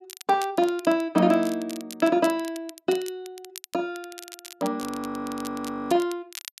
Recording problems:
crackling; vinyl, SNR 16 dB
frozen audio; at 5 s for 1 s

